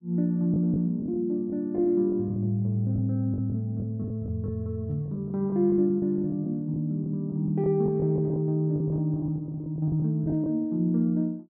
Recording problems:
lost packets; 11% of the sound replaced, filled with the last packet

